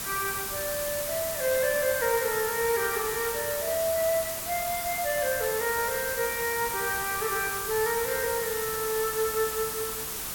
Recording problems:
hiss; slope -1 dB per octave, SNR 2 dB

